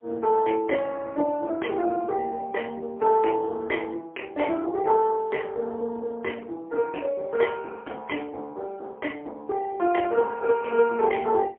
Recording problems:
telephone audio; 240 Hz to 3.1 kHz, AMR-NB, then MP3

